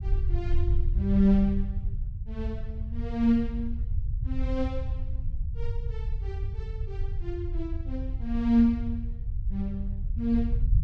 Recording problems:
low-frequency rumble; below 76 Hz, SNR 4 dB

